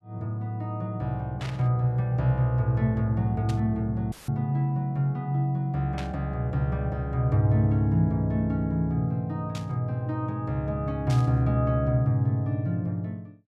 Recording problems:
static burst; 5 times, first at 1.5 s; peak -8 dB vs average level
dropout; at 4 s; filled with static

